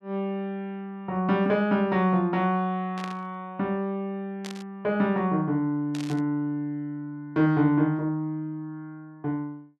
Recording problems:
burst of static; at 3 s, at 4.5 s and at 6 s; peak -8 dB vs average level

